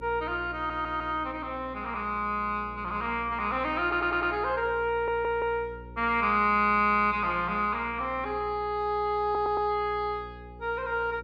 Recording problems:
hum; 60 Hz, harmonics up to 540 Hz, SNR 18 dB
audio stuttering; 4 times, first at 0.5 s

